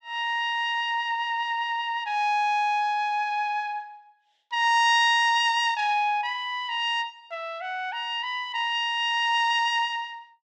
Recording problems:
none

